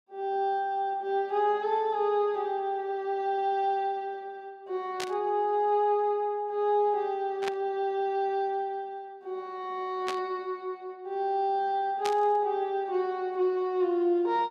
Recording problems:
burst of static; 4 times, first at 5 s; peak -2 dB vs average level

